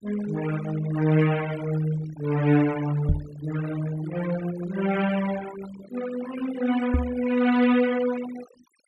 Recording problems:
noise reduction artefacts; signal-to-artefact ratio 14 dB
knock on the microphone; at 3 s and at 7 s; peak +5 dB vs average level

